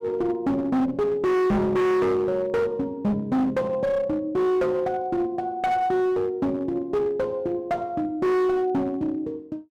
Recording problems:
distorted audio; hard clipping, uneven, signal-to-distortion ratio 6 dB

